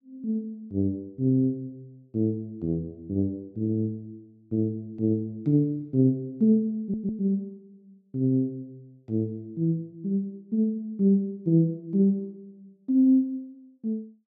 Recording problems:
stutter; at 7 s

